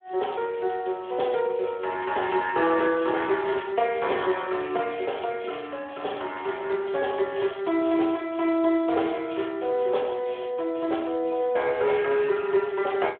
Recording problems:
phone line; 280 Hz to 3.4 kHz, Speex

